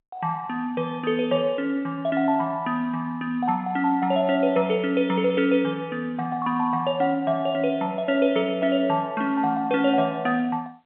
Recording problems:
phone line; 260 Hz to 3.3 kHz, G.711

